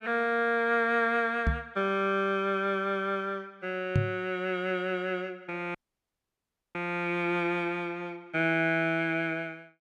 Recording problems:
microphone bump; at 1.5 s and at 4 s; peak +6 dB vs average level
dropout; at 6 s for 1 s

